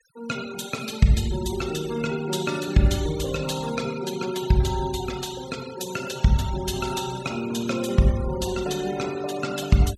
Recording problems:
denoising artefacts; signal-to-artefact ratio 15 dB

